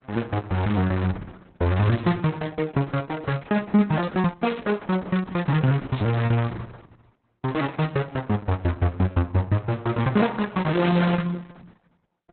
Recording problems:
lossy codec; Opus, log-spectral distance 4 dB, nothing above 4 kHz
lost packets; 6% of the sound replaced, filled with repeated pitch periods
burst of static; at 2 s, at 4.5 s and at 6 s; peak -9 dB vs average level

